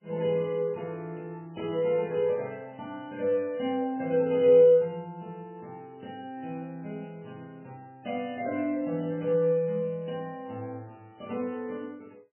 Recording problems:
codec artefacts; MP3, log-spectral distance 2 dB, nothing above 2.5 kHz

